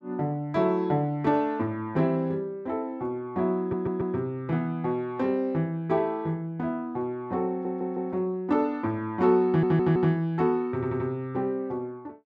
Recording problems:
stutter; 4 times, first at 3.5 s

